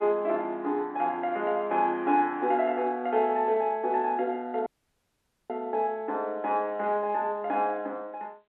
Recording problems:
telephone audio; 240 Hz to 3.3 kHz, G.711
dropout; at 4.5 s for 1 s

